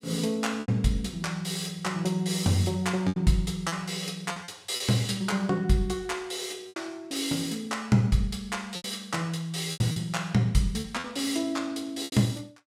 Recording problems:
packet loss; 6% of the sound replaced, filled with repeated pitch periods

